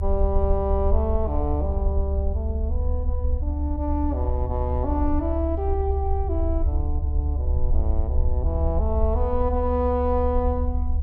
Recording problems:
rumble; below 72 Hz, SNR -2 dB

